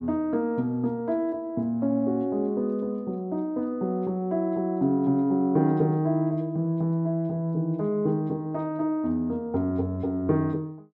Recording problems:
none

